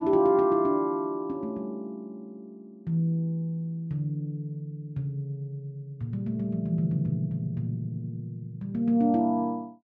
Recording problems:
none

